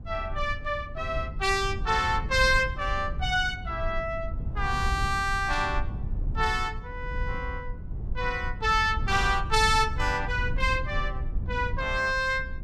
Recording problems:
low-frequency rumble; below 86 Hz, SNR 7 dB

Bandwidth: 15 kHz